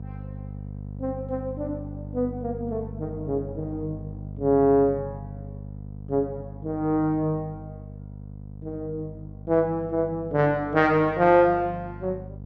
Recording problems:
hum; 50 Hz, harmonics up to 500 Hz, SNR 13 dB

